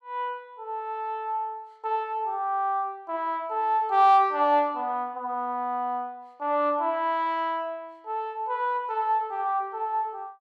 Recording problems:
none

